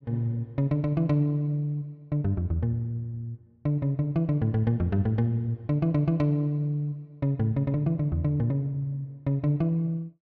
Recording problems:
none

